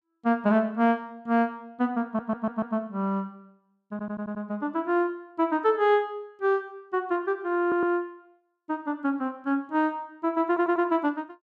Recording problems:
stutter; 4 times, first at 2 s

